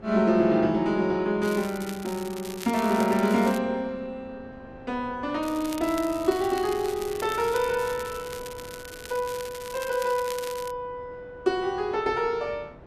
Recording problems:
wind on the microphone; below 590 Hz, SNR 21 dB
crackle; from 1.5 to 3.5 s and from 5.5 to 11 s; loose cable, SNR 15 dB

